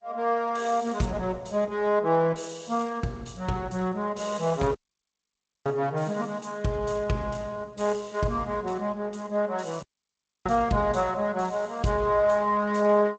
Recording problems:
lossy compression; Opus, then G.722, log-spectral distance 4 dB, nothing above 7.6 kHz
audio cutting out; at 5 s for 1 s and at 10 s for 0.5 s

